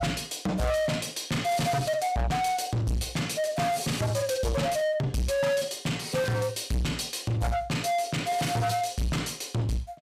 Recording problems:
distorted audio; soft clipping, signal-to-distortion ratio 6 dB

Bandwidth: 15.5 kHz